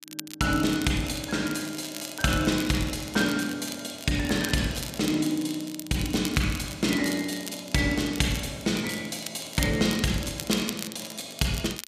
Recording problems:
crackle; vinyl, SNR 12 dB

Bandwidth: 14.5 kHz